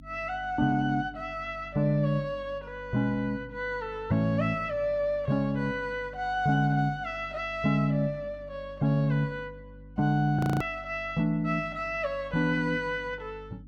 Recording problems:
hum; 50 Hz, harmonics up to 300 Hz, SNR 20 dB
audio freezing; at 10 s

